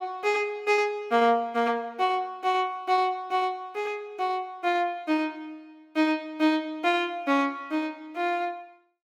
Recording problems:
none

